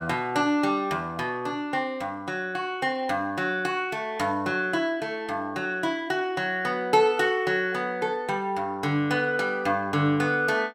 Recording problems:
none

